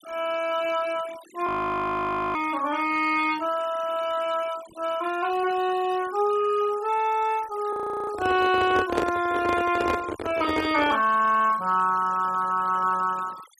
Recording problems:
noise reduction artefacts; signal-to-artefact ratio 19 dB
audio freezing; at 1.5 s for 1 s and at 7.5 s
handling noise; from 8 to 11 s; peak +3 dB vs average level

